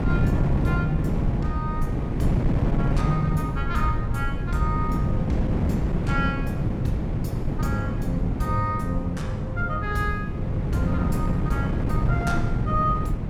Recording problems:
rumble; below 80 Hz, SNR 7 dB
wind on the microphone; below 230 Hz, SNR -2 dB

